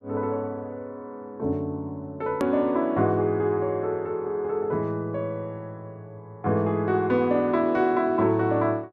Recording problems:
hard cut with a click; at 2.5 s

